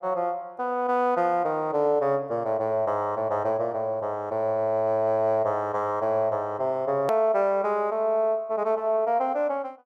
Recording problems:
hard cut with a click; at 7 s

